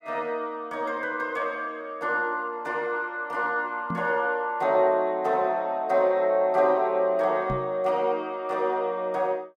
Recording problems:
knock on the microphone; at 4 s and at 7.5 s; peak -3 dB vs average level

